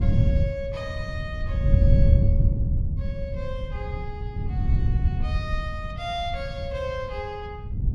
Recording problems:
wind noise; below 120 Hz, SNR -9 dB

